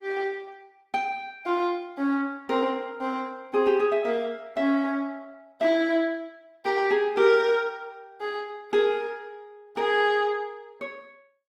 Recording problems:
lossy codec; Opus, log-spectral distance 2 dB

